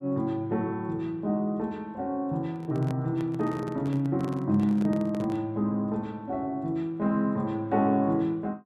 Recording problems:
microphone handling noise; from 2.5 to 5.5 s; peak -6 dB vs average level

